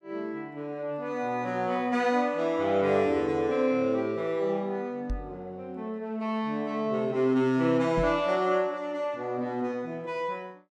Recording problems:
microphone thump; at 5 s and at 8 s; peak -2 dB vs average level

